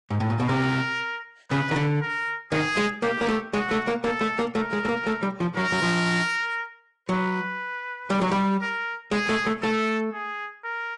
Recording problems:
codec artefacts; AAC, log-spectral distance 2 dB, nothing above 10.1 kHz
distortion; hard clipping, signal-to-distortion ratio 11 dB

